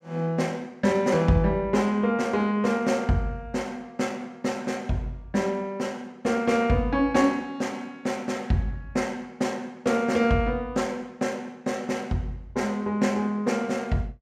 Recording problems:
none

